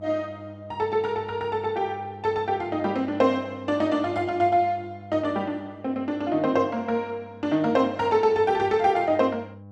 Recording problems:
hum; 50 Hz, harmonics up to 1 kHz, SNR 20 dB

